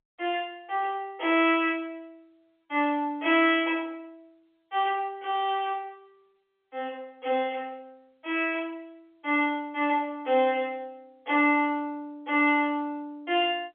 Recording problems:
telephone audio; 260 Hz to 3.4 kHz, G.711

